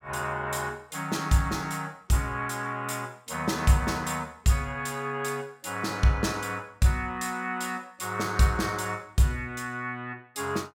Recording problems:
none

